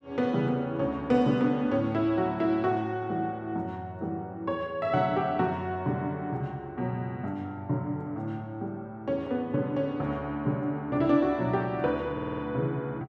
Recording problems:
audio stuttering; at 12 s

